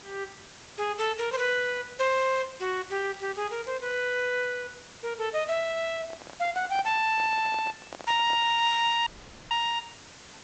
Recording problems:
low-pass filter; nothing above 8 kHz
background hiss; slope -1 dB per octave, SNR 20 dB
crackling; from 2.5 to 4 s; loose cable, SNR 27 dB
microphone handling noise; from 6 to 8.5 s; peak -11 dB vs average level
dropout; at 9 s

